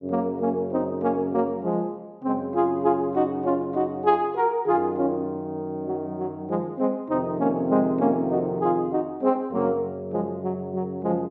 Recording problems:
none

